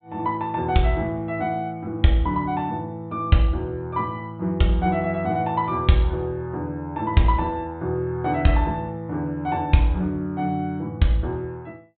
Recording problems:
treble cut off; nothing above 4 kHz

